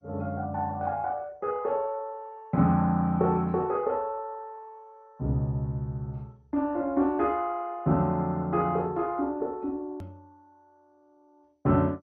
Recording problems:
lossy codec; MP2, log-spectral distance 2 dB
edit click; at 10 s

